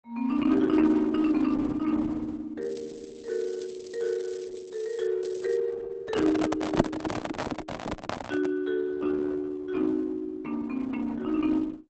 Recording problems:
codec artefacts; Opus, log-spectral distance 4 dB, nothing above 8 kHz
crackling; from 2.5 to 5 s and at 5 s; loose cable, SNR 26 dB
handling noise; from 6 to 8.5 s; peak +3 dB vs average level

